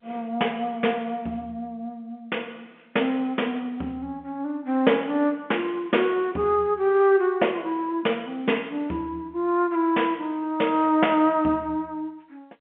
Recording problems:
phone line; 220 Hz to 3.3 kHz, G.711

